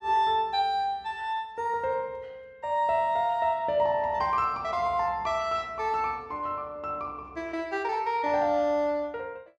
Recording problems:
none

